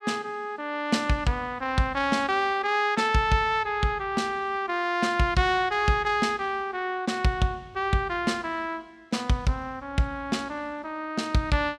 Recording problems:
none

